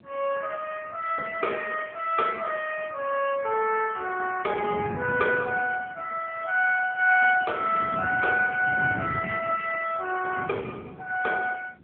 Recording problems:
phone line; 280 Hz to 3.3 kHz, AMR-NB
wind noise; below 310 Hz, SNR 12 dB

